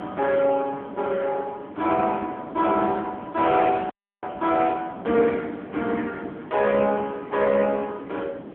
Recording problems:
telephone audio; 220 Hz to 3.4 kHz, AMR-NB
background hiss; SNR 16 dB
frozen audio; at 4 s

